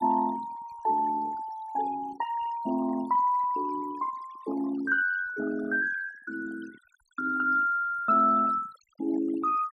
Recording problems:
noise reduction artefacts; signal-to-artefact ratio 19 dB

